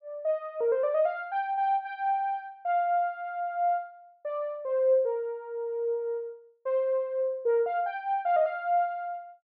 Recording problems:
treble missing; nothing above 5.5 kHz

